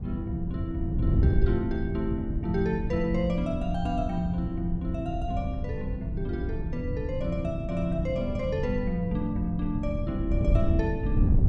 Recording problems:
wind noise; below 120 Hz, SNR 0 dB

